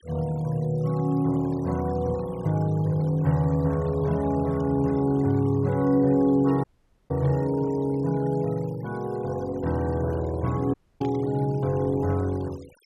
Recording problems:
noise reduction artefacts; signal-to-artefact ratio 24 dB
dropout; at 6.5 s and at 11 s
burst of static; at 11 s; peak -18 dB vs average level

